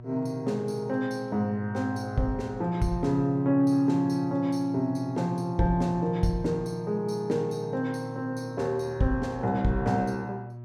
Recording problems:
hum; 60 Hz, harmonics up to 960 Hz, SNR 14 dB

